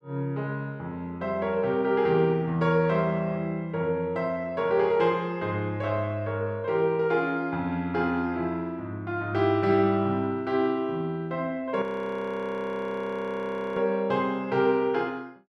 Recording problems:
audio freezing; at 12 s for 2 s

